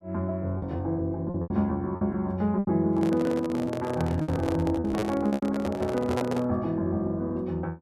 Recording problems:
lost packets; 9% of the sound replaced, filled with repeated pitch periods
handling noise; from 3 to 6.5 s; peak +2 dB vs average level

